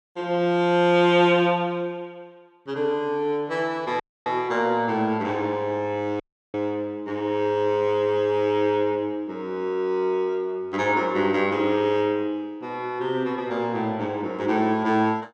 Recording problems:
dropout; at 4 s and at 6 s

